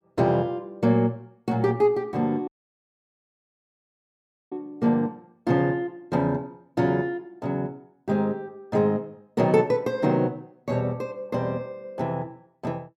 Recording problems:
audio cutting out; at 2.5 s for 2 s

